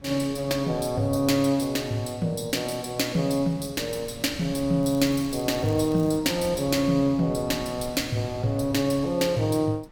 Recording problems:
wind noise; below 240 Hz, SNR 19 dB
crackle; from 5 to 6 s; loose cable, SNR 24 dB

